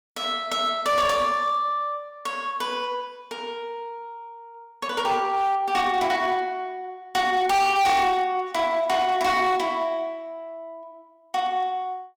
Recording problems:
distorted audio; hard clipping, signal-to-distortion ratio 8 dB

